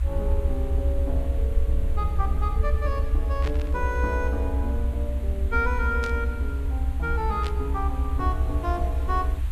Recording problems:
hiss; SNR 18 dB
rumble; below 68 Hz, SNR -4 dB
burst of static; at 3.5 s, at 6 s and at 7.5 s; peak -2 dB vs average level

